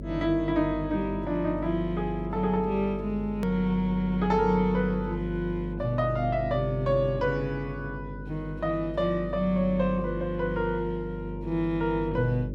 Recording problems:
hum; 50 Hz, harmonics up to 600 Hz, SNR 9 dB
edit click; at 3.5 s

